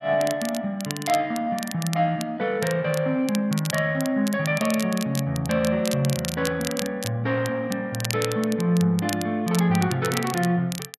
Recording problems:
crackle; vinyl, SNR 11 dB

